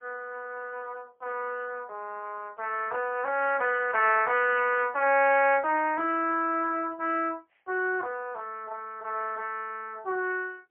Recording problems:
phone line; 320 Hz to 3 kHz, AMR-NB, then MP3

